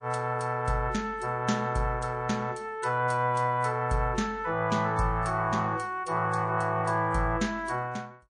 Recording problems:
lossy codec; MP3, log-spectral distance 2 dB, nothing above 8.7 kHz

